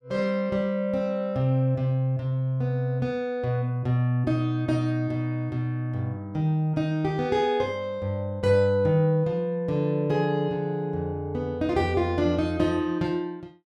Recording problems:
none

